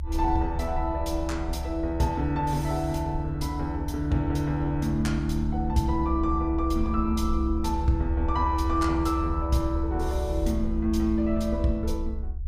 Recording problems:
rumble; below 68 Hz, strongest tone 66 Hz, SNR 5 dB

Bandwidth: 15.5 kHz